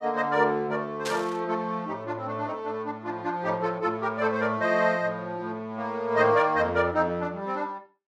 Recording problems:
burst of static; at 1 s; peak -2 dB vs average level

